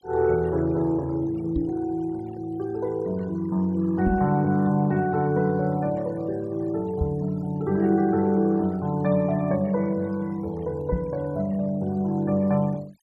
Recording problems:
denoising artefacts; signal-to-artefact ratio 25 dB
microphone thump; 4 times, first at 1.5 s; peak +2 dB vs average level

